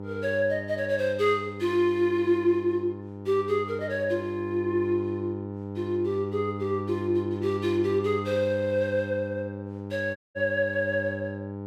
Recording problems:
electrical hum; 50 Hz, harmonics up to 1 kHz, SNR 9 dB
audio cutting out; at 10 s

